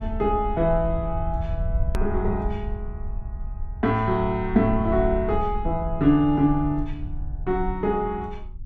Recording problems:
low-frequency rumble; below 70 Hz, SNR 8 dB
hard cut with a click; at 2 s

